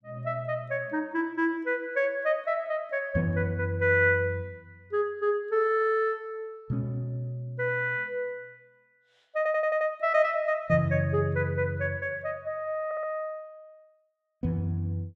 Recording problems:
stutter; at 9.5 s and at 13 s

